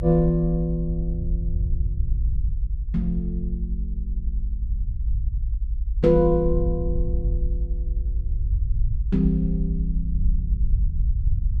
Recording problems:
rumble; below 58 Hz, SNR 2 dB

